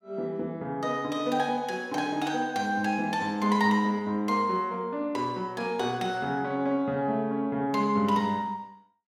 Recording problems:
none

